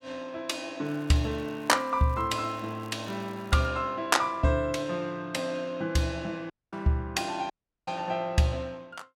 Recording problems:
crackling; from 1 to 3.5 s; loose cable, SNR 27 dB
dropout; at 6.5 s and at 7.5 s

